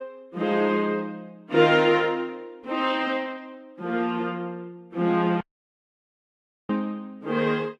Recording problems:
lossy compression; Vorbis, log-spectral distance 2 dB, nothing above 12.3 kHz
audio cutting out; at 5.5 s for 1.5 s

